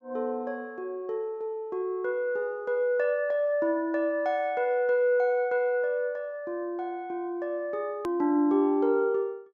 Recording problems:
treble missing; nothing above 7.8 kHz
hard cut with a click; at 8 s

